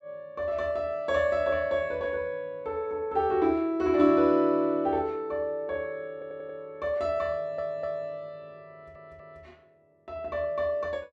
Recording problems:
stutter; at 6 s, at 7.5 s and at 8.5 s

